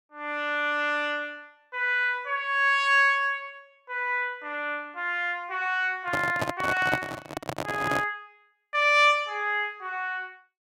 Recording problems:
microphone handling noise; from 6 to 8 s; peak +2 dB vs average level

